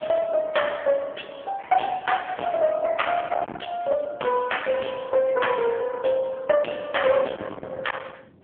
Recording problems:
phone line; 240 Hz to 3.4 kHz, AMR-NB
distortion; hard clipping, uneven, signal-to-distortion ratio 4 dB
wind noise; below 1.4 kHz, SNR 15 dB

